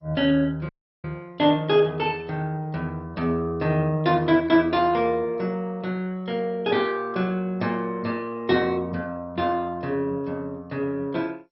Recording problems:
codec artefacts; MP2, log-spectral distance 2 dB, nothing above 5.3 kHz
audio cutting out; at 0.5 s

